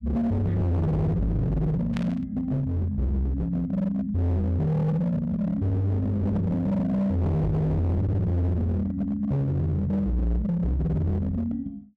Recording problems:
distorted audio; hard clipping, signal-to-distortion ratio 7 dB
burst of static; at 2 s; peak -8 dB vs average level

